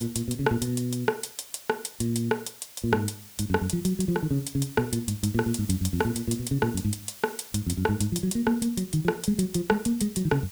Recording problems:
background hiss; slope +1 dB per octave, SNR 17 dB

